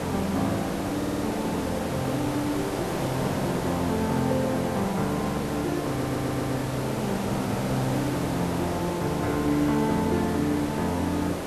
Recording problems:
hiss; slope -7 dB per octave, SNR 4 dB
audio stuttering; at 1 s and at 6 s

